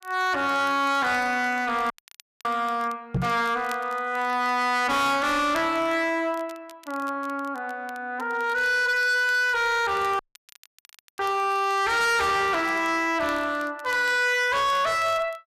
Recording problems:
distorted audio; hard clipping, signal-to-distortion ratio 7 dB
crackle; vinyl, SNR 27 dB
audio cutting out; at 2 s for 0.5 s and at 10 s for 1 s
microphone bump; at 3 s; peak +1 dB vs average level

